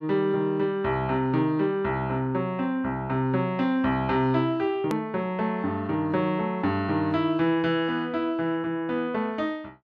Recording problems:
edit click; at 5 s

